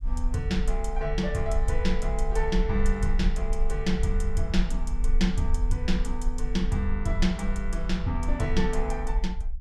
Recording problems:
low-frequency rumble; below 44 Hz, strongest tone 24 Hz, SNR 1 dB

